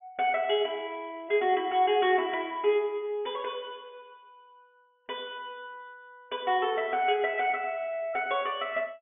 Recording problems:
low-pass filter; nothing above 3.5 kHz

